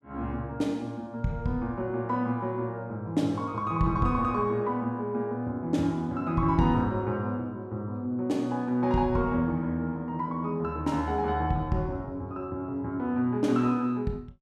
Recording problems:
none

